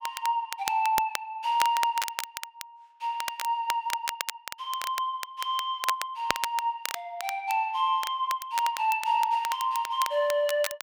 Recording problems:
crackle; vinyl, SNR 8 dB

